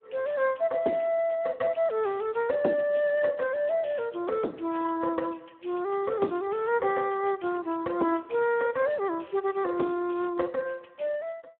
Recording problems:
phone line; 260 Hz to 2.5 kHz, Speex

